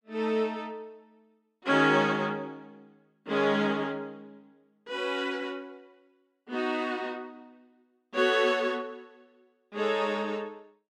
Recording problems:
none

